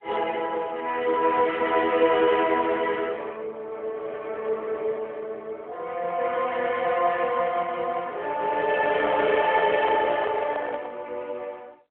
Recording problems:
phone line; 340 Hz to 3.4 kHz, AMR-NB
handling noise; from 8.5 to 11 s; peak -2 dB vs average level

